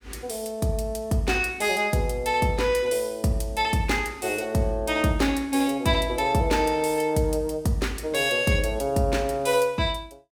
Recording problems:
none

